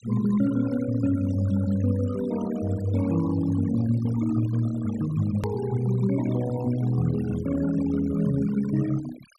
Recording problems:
noise reduction artefacts; signal-to-artefact ratio 16 dB
edit click; at 5.5 s

